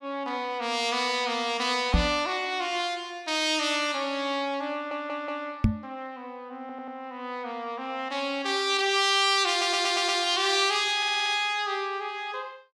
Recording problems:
microphone bump; at 2 s and at 5.5 s; peak +7 dB vs average level
audio stuttering; 4 times, first at 4.5 s

